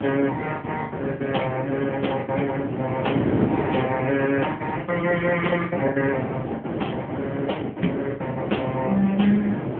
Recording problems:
phone line; 170 Hz to 3.3 kHz, AMR-NB
wind on the microphone; below 510 Hz, SNR 3 dB
packet loss; 11% of the sound replaced, filled with the last packet

